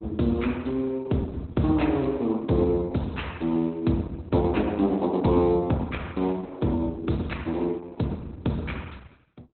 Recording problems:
lossy compression; Opus, log-spectral distance 3 dB, nothing above 4 kHz

